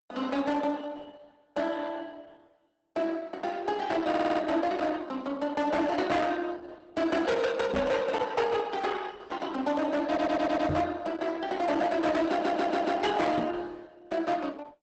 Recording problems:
lossy compression; Opus, log-spectral distance 4 dB, nothing above 8 kHz
distortion; hard clipping, signal-to-distortion ratio 10 dB
stutter; at 4 s, at 10 s and at 12 s
microphone bump; at 7.5 s, at 11 s and at 13 s; peak +3 dB vs average level

